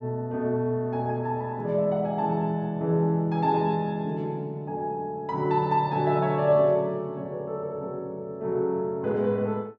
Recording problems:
none

